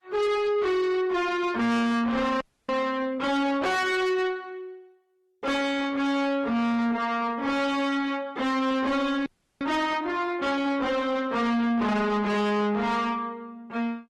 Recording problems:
lossy compression; Opus, log-spectral distance 2 dB, nothing above 15.5 kHz
distorted audio; soft clipping, signal-to-distortion ratio 7 dB
audio freezing; at 2.5 s and at 9.5 s

